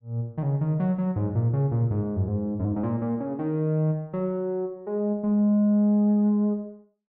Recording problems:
none

